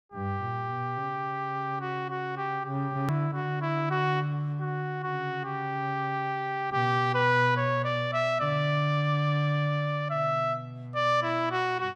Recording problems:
edit click; at 3 s

